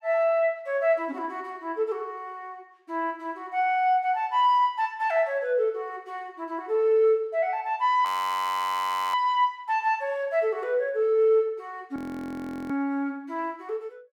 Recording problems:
audio freezing; at 8 s for 1 s and at 12 s for 0.5 s

